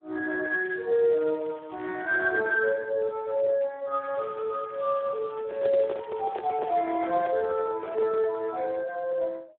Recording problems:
telephone audio; 320 Hz to 2.2 kHz, Speex
crackle; from 0.5 to 2.5 s, from 4 to 6 s and from 6.5 to 7.5 s; loose cable, SNR 26 dB
microphone handling noise; from 5.5 to 8.5 s; peak -2 dB vs average level

